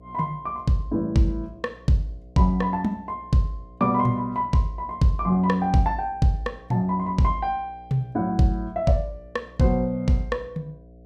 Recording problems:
hum; 60 Hz, harmonics up to 720 Hz, SNR 25 dB

